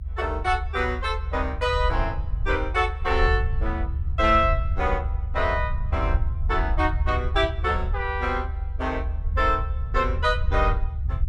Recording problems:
rumble; below 74 Hz, SNR 2 dB

